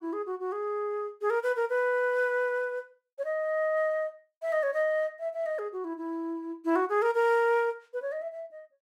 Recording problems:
none

